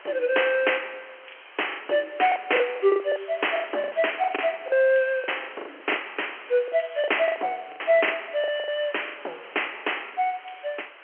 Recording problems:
phone line; 300 Hz to 3.2 kHz, G.711
hiss; SNR 20 dB
packet loss; 14% of the sound replaced, filled with the last packet

